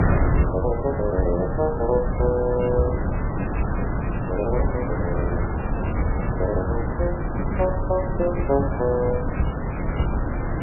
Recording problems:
lossy compression; MP3, log-spectral distance 13 dB, nothing above 2.9 kHz
hiss; SNR 14 dB
wind noise; below 320 Hz, SNR 1 dB

